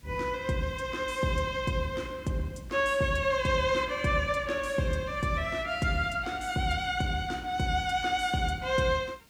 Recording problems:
hiss; SNR 30 dB

